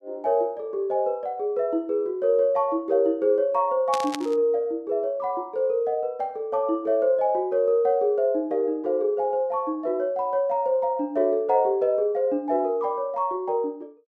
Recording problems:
static burst; at 4 s; peak -4 dB vs average level

